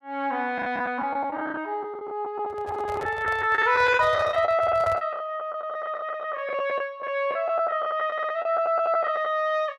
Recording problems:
packet loss; 13% of the sound replaced, filled with the last packet
handling noise; from 2.5 to 5 s; peak -7 dB vs average level

